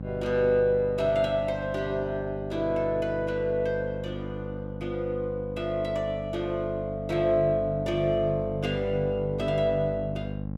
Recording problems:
mains hum; 50 Hz, harmonics up to 850 Hz, SNR 8 dB

